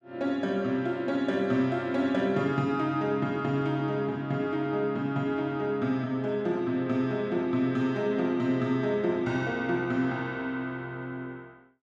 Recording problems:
none

